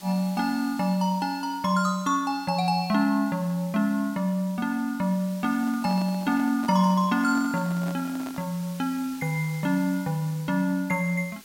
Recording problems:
background hiss; slope 0 dB per octave, SNR 20 dB
handling noise; from 5.5 to 8.5 s; peak -9 dB vs average level

